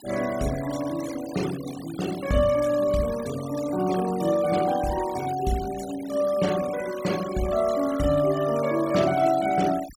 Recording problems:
denoising artefacts; signal-to-artefact ratio 15 dB

